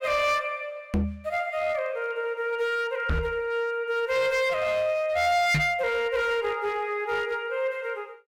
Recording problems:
distorted audio; hard clipping, uneven, signal-to-distortion ratio 11 dB
microphone thump; at 1 s, at 3 s and at 5.5 s; peak +6 dB vs average level

